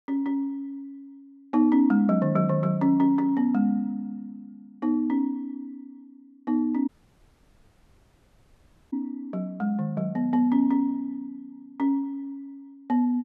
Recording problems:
dropout; at 7 s for 2 s

